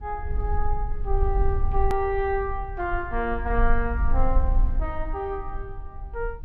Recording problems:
low-frequency rumble; below 50 Hz, strongest tone 18 Hz, SNR 0 dB
click at an edit; at 2 s

